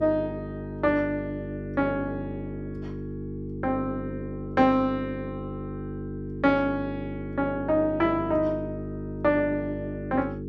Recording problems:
mains hum; 50 Hz, harmonics up to 450 Hz, SNR 8 dB

